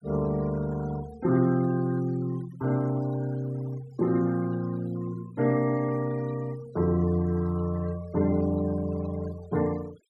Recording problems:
denoising artefacts; signal-to-artefact ratio 20 dB

